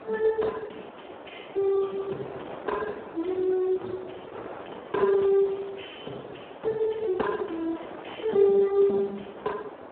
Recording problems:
telephone audio; 260 Hz to 3 kHz, Speex
wind on the microphone; below 950 Hz, SNR 15 dB

